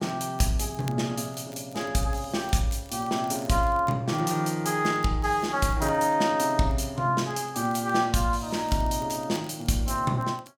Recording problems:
crackling; vinyl, SNR 26 dB

